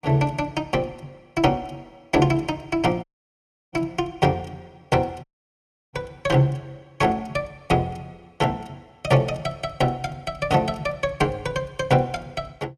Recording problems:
audio cutting out; at 3 s for 0.5 s and at 5 s for 0.5 s

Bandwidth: 14.5 kHz